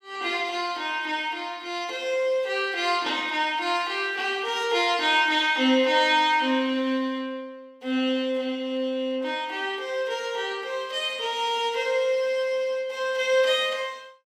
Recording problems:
none

